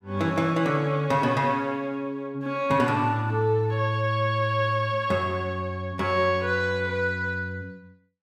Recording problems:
none

